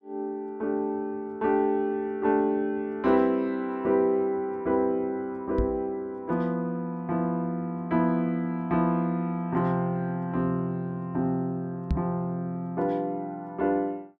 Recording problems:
microphone thump; at 5.5 s and at 12 s; peak +4 dB vs average level

